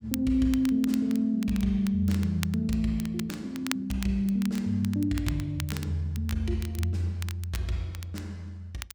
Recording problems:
crackle; vinyl, SNR 15 dB

